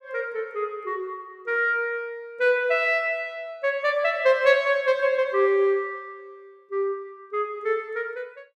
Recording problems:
none

